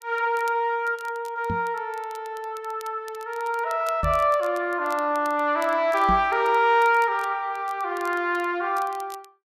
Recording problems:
crackle; vinyl, SNR 25 dB
microphone bump; at 1.5 s, at 4 s and at 6 s; peak -1 dB vs average level

